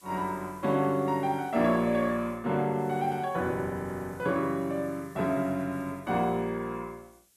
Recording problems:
hiss; SNR 27 dB

